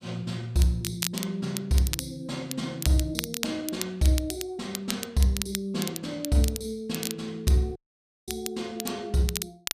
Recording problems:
crackle; vinyl, SNR 7 dB
audio cutting out; at 8 s for 0.5 s

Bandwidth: 14.5 kHz